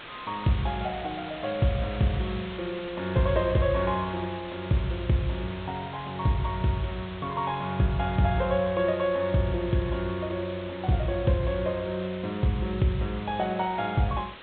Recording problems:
low-pass filter; nothing above 4 kHz
hiss; SNR 14 dB

